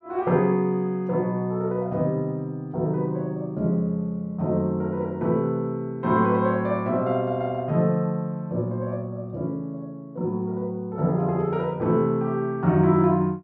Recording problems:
none

